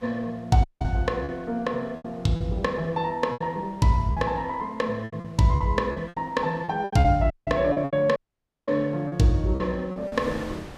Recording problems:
wind noise; below 1.1 kHz, SNR 23 dB
packet loss; 11% of the sound replaced, filled with repeated pitch periods
dropout; at 0.5 s, at 7.5 s and at 8 s for 0.5 s

